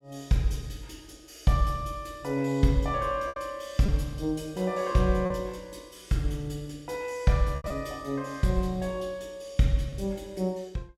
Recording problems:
packet loss; 3% of the sound replaced, filled with repeated pitch periods

